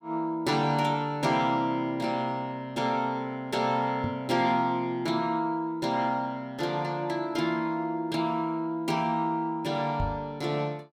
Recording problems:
microphone thump; at 4 s and at 10 s; peak 0 dB vs average level

